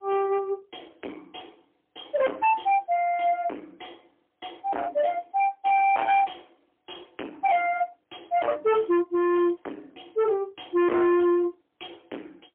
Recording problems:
telephone audio; 900 Hz to 3.6 kHz, AMR-NB, then MP3
distortion; hard clipping, signal-to-distortion ratio 4 dB

